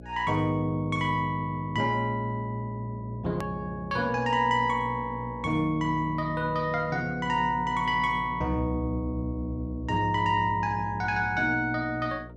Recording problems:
electrical hum; 60 Hz, harmonics up to 660 Hz, SNR 16 dB
click at an edit; at 3.5 s

